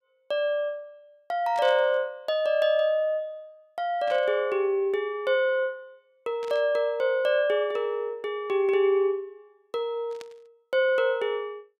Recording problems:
static burst; 4 times, first at 1.5 s; peak -13 dB vs average level

